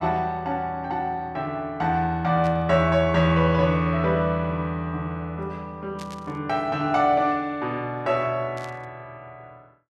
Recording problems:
burst of static; at 2.5 s, at 6 s and at 8.5 s; peak -13 dB vs average level

